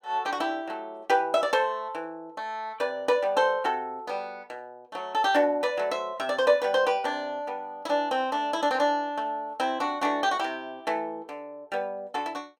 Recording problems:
none

